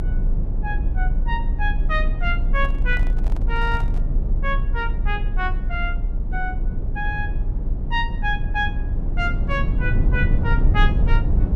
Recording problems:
rumble; below 64 Hz, strongest tone 30 Hz, SNR -4 dB
handling noise; from 2.5 to 4 s; peak -9 dB vs average level

